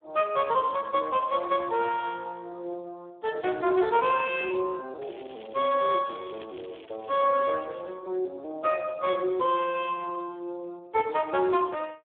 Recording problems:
telephone audio; 320 Hz to 3.5 kHz, Speex
crackling; from 5 to 7.5 s; loose cable, SNR 23 dB

